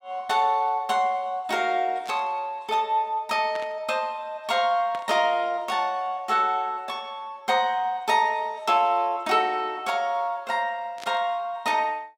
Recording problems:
static burst; 4 times, first at 2 s; peak -10 dB vs average level

